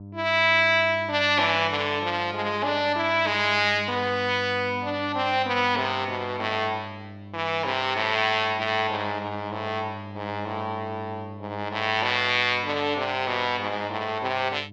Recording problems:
hum; 50 Hz, harmonics up to 700 Hz, SNR 16 dB

